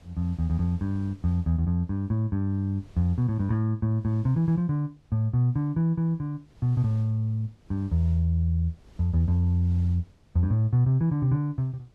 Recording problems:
wind noise; below 300 Hz, SNR 28 dB

